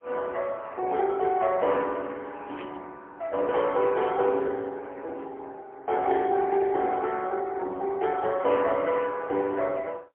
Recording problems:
telephone audio; 220 Hz to 2.5 kHz, AMR-NB, then MP3
burst of static; at 2.5 s and at 4 s; peak -12 dB vs average level

